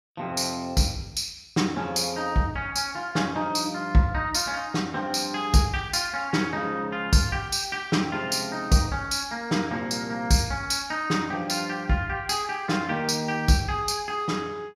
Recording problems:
none

